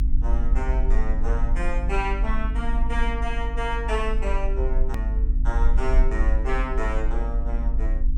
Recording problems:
hum; 50 Hz, harmonics up to 300 Hz, SNR 7 dB
rumble; below 48 Hz, SNR -5 dB
click at an edit; at 5 s

